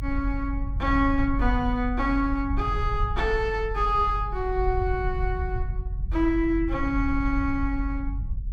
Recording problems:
rumble; below 64 Hz, strongest tone 44 Hz, SNR 4 dB

